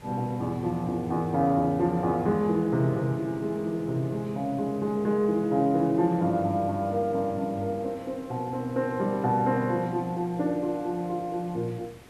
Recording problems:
background hiss; SNR 23 dB

